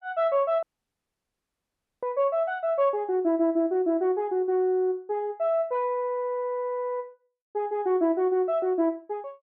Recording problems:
dropout; at 0.5 s for 1.5 s

